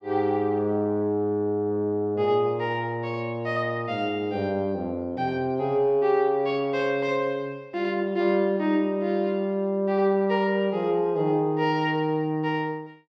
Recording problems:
none

